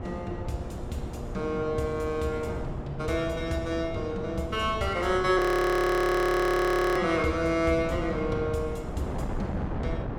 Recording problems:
hum; 60 Hz, harmonics up to 1.3 kHz, SNR 18 dB
wind noise; below 400 Hz, SNR 9 dB
frozen audio; at 5.5 s for 1.5 s

